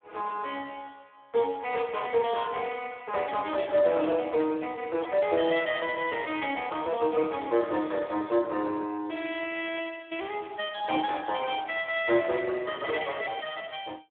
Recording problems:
phone line; 260 Hz to 3.4 kHz, Speex

